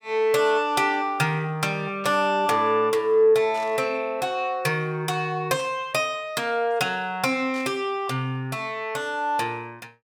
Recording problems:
burst of static; 4 times, first at 2 s; peak -13 dB vs average level

